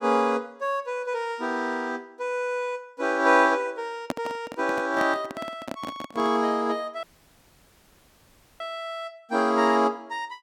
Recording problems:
handling noise; from 4 to 6.5 s; peak +1 dB vs average level
audio cutting out; at 7 s for 1.5 s

